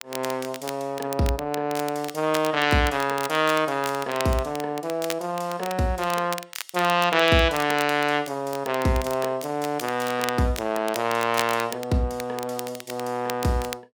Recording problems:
crackling; vinyl, SNR 13 dB

